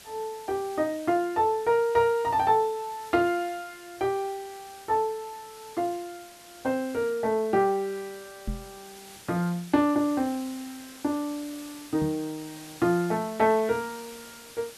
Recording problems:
hiss; slope 0 dB per octave, SNR 19 dB
knock on the microphone; at 8.5 s and at 12 s; peak -2 dB vs average level

